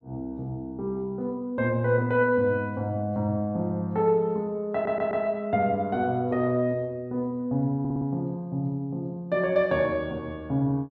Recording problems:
stutter; at 4.5 s and at 8 s

